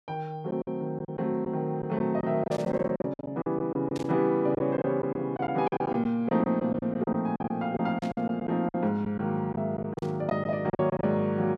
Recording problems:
packet loss; 12% of the sound replaced, filled with silence
static burst; 4 times, first at 2.5 s; peak -10 dB vs average level

